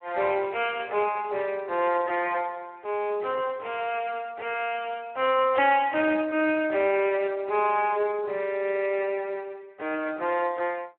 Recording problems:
phone line; 280 Hz to 3.2 kHz, Speex

